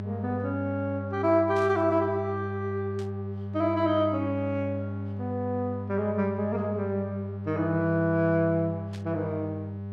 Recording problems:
hum; 50 Hz, harmonics up to 600 Hz, SNR 7 dB
burst of static; at 1.5 s, at 3 s and at 9 s; peak -14 dB vs average level

